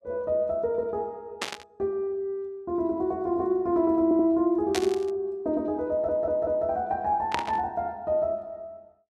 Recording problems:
burst of static; at 1.5 s, at 4.5 s and at 7.5 s; peak +1 dB vs average level
audio stuttering; at 4 s and at 6 s

